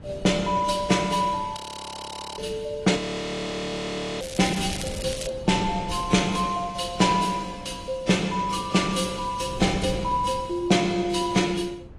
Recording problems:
codec artefacts; AAC, log-spectral distance 4 dB, nothing above 11 kHz
wind noise; below 230 Hz, SNR 16 dB
audio freezing; at 1.5 s for 1 s and at 3 s for 1 s
crackle; from 4 to 5.5 s; loose cable, SNR 11 dB

